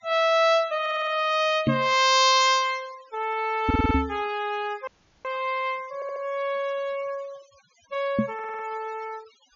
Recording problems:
treble missing; nothing above 7 kHz
denoising artefacts; signal-to-artefact ratio 25 dB
audio stuttering; 4 times, first at 1 s
knock on the microphone; at 1.5 s, at 3.5 s and at 8 s; peak +5 dB vs average level
audio cutting out; at 5 s

